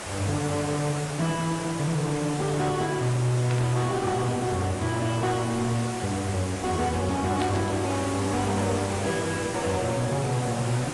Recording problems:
lossy codec; AAC, log-spectral distance 9 dB, nothing above 10.4 kHz
distorted audio; hard clipping, signal-to-distortion ratio 10 dB
hiss; slope -4 dB per octave, SNR 7 dB
burst of static; at 3.5 s and at 7.5 s; peak -4 dB vs average level

